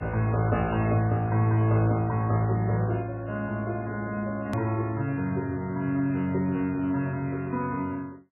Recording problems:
lossy compression; MP3, log-spectral distance 2 dB, nothing above 13.1 kHz
hard cut with a click; at 4.5 s

